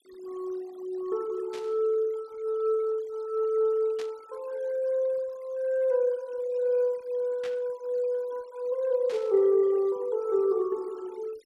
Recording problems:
noise reduction artefacts; signal-to-artefact ratio 26 dB
burst of static; 4 times, first at 1.5 s; peak -11 dB vs average level

